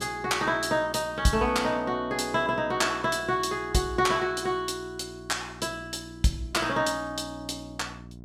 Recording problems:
hum; 60 Hz, harmonics up to 720 Hz, SNR 19 dB

